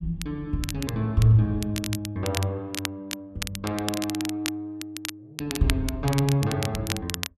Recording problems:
crackling; vinyl, SNR 8 dB

